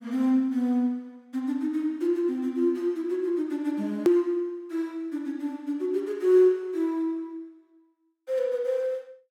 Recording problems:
edit click; at 4 s

